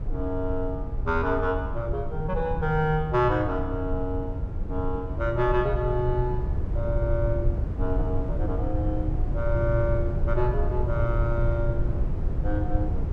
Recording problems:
rumble; below 92 Hz, SNR 2 dB

